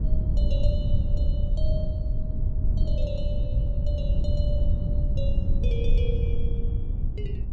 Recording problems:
wind noise; below 82 Hz, SNR -13 dB

